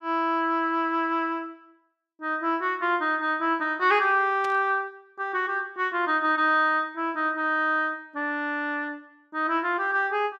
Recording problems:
burst of static; at 4.5 s; peak -12 dB vs average level

